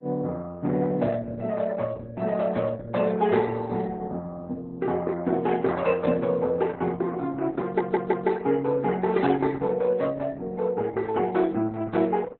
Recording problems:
codec artefacts; MP3, then Opus, log-spectral distance 3 dB, nothing above 4 kHz
audio stuttering; at 7.5 s

